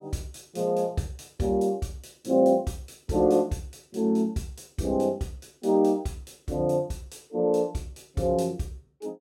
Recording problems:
none

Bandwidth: 16 kHz